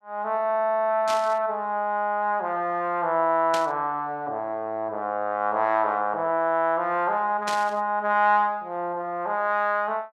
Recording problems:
static burst; at 1 s, at 3.5 s and at 7.5 s; peak -2 dB vs average level

